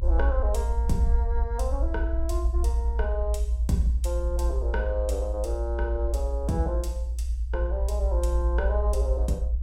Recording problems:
rumble; below 60 Hz, strongest tone 58 Hz, SNR -4 dB

